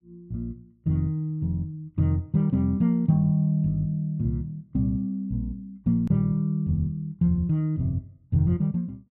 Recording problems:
hard cut with a click; at 6 s

